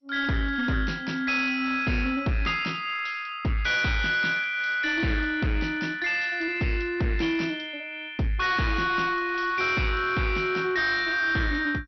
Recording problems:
lossy compression; MP2, log-spectral distance 3 dB, nothing above 5.8 kHz
distortion; soft clipping, signal-to-distortion ratio 10 dB

